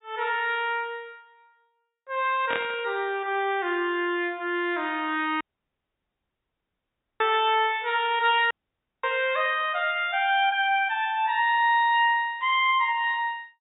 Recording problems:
low-pass filter; nothing above 4 kHz
burst of static; at 2.5 s; peak -3 dB vs average level
dropout; at 5.5 s for 2 s and at 8.5 s for 0.5 s

